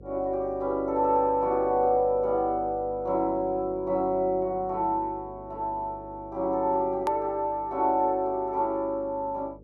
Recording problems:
mains hum; 50 Hz, harmonics up to 550 Hz, SNR 21 dB
click at an edit; at 7 s

